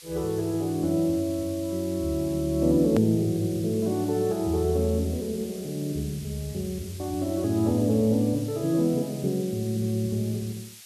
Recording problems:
background hiss; slope +4 dB per octave, SNR 18 dB
edit click; at 3 s

